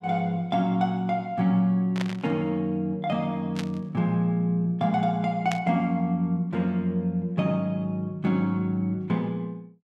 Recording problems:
static burst; at 2 s, at 3.5 s and at 5.5 s; peak -3 dB vs average level

